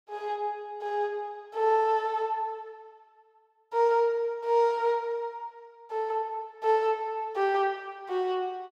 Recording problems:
none

